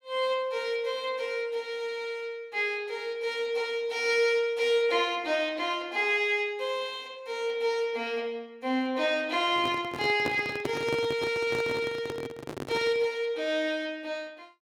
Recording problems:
handling noise; from 9.5 to 13 s; peak +1 dB vs average level

